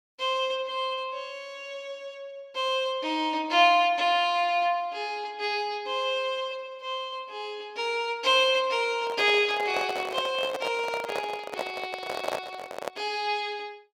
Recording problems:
handling noise; from 9 to 13 s; peak +1 dB vs average level

